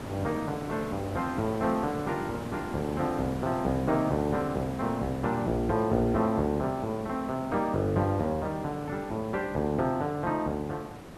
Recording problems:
background hiss; slope -7 dB per octave, SNR 11 dB

